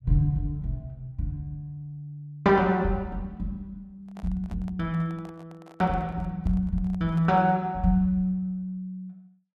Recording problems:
microphone handling noise; from 4 to 7.5 s; peak -12 dB vs average level

